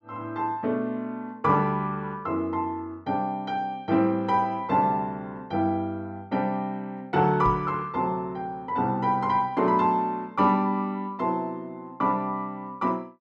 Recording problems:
knock on the microphone; at 7.5 s; peak -2 dB vs average level

